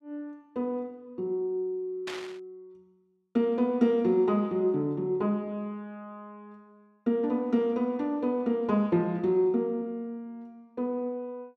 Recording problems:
static burst; at 2 s; peak -5 dB vs average level

